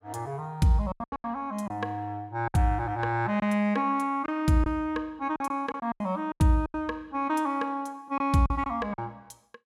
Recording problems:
packet loss; 9% of the sound replaced, filled with silence

